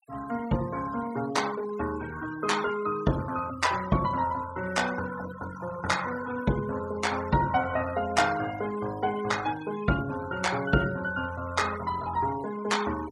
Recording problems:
noise reduction artefacts; signal-to-artefact ratio 14 dB

